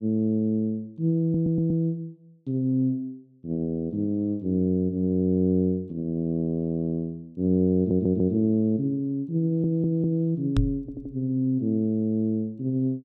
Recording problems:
audio stuttering; 4 times, first at 1 s
microphone bump; at 11 s; peak +5 dB vs average level

